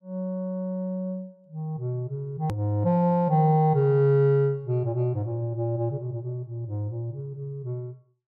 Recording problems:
edit click; at 2.5 s

